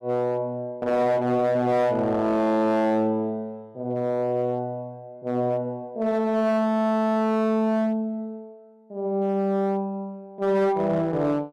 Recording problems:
distortion; hard clipping, signal-to-distortion ratio 11 dB

